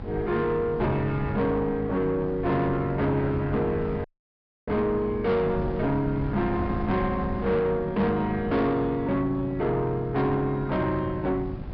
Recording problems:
treble cut off; nothing above 5.5 kHz
distortion; soft clipping, signal-to-distortion ratio 11 dB
hum; 50 Hz, harmonics up to 1.1 kHz, SNR 15 dB
wind noise; below 270 Hz, SNR 11 dB
audio cutting out; at 4 s for 0.5 s

